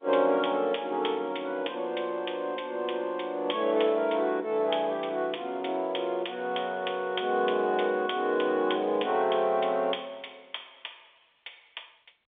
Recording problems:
phone line; 220 Hz to 3.6 kHz, G.711

